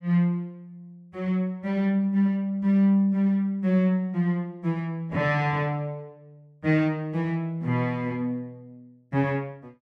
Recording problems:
none

